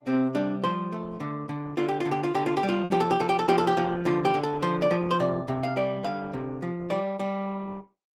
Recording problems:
lossy codec; Opus, log-spectral distance 3 dB, nothing above 19 kHz
lost packets; 0.8% of the sound replaced, filled with repeated pitch periods

